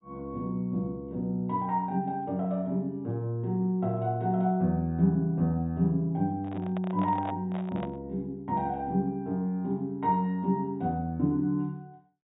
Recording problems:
treble cut off; nothing above 4 kHz
handling noise; from 6.5 to 8 s; peak -5 dB vs average level

